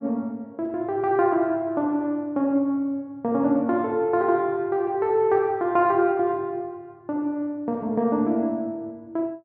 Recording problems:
none

